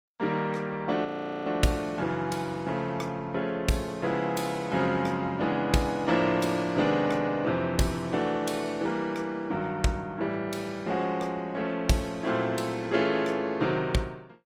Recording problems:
codec artefacts; Opus, log-spectral distance 3 dB, nothing above 20.1 kHz
audio freezing; at 1 s

